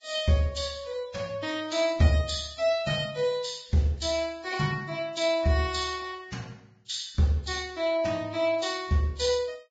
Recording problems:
lossy compression; Vorbis, log-spectral distance 5 dB, nothing above 7.6 kHz

